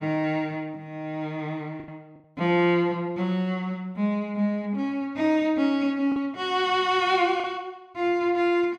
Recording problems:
packet loss; 1.9% of the sound replaced, filled with the last packet

